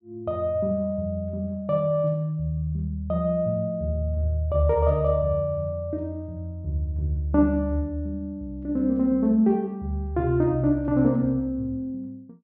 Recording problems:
low-pass filter; nothing above 8 kHz

